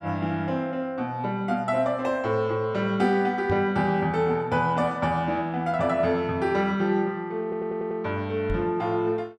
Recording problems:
knock on the microphone; at 3.5 s and at 8.5 s; peak -1 dB vs average level
stutter; at 7.5 s

